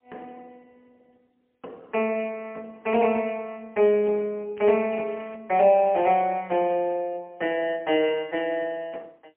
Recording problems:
telephone audio; 260 Hz to 3.1 kHz, AMR-NB, then MP3
crackle; at 4.5 s; loose cable, SNR 28 dB

